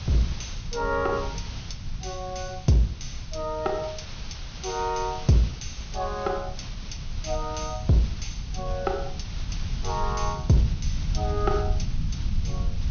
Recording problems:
treble cut off; nothing above 6.5 kHz
hiss; slope 0 dB per octave, SNR 15 dB
rumble; below 98 Hz, SNR 6 dB

